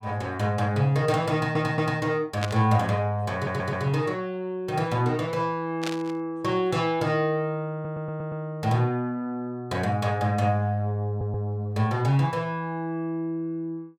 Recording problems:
audio stuttering; 4 times, first at 1.5 s
static burst; at 2.5 s and at 6 s; peak 0 dB vs average level

